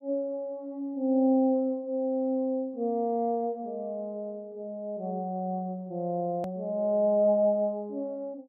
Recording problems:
click at an edit; at 6.5 s

